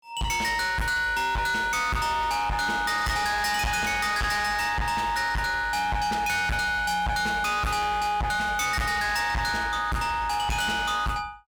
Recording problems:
distortion; hard clipping, uneven, signal-to-distortion ratio 6 dB

